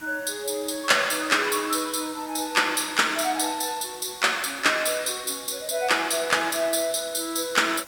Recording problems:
hiss; SNR 21 dB

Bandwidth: 17 kHz